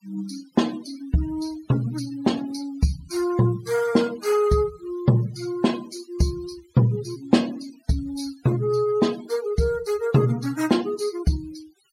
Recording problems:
noise reduction artefacts; signal-to-artefact ratio 19 dB

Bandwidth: 16 kHz